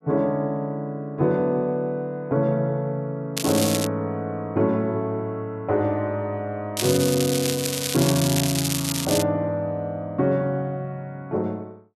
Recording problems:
crackle; at 3.5 s and from 7 to 9 s; loose cable, SNR 3 dB

